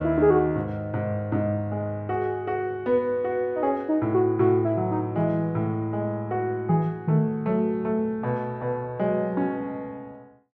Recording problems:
none

